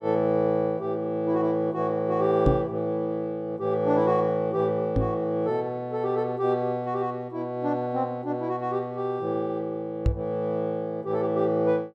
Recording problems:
microphone bump; at 2.5 s, at 5 s and at 10 s; peak +6 dB vs average level

